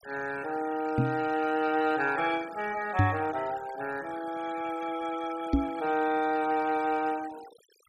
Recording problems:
noise reduction artefacts; signal-to-artefact ratio 18 dB
microphone bump; at 1 s, at 3 s and at 5.5 s; peak +8 dB vs average level

